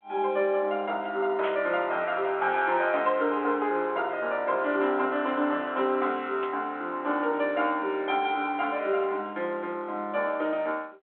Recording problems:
telephone audio; 280 Hz to 3.5 kHz, G.726
static burst; at 1.5 s and at 6.5 s; peak -6 dB vs average level

